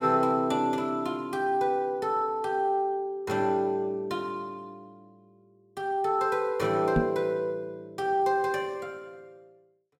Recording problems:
microphone bump; at 7 s; peak +5 dB vs average level

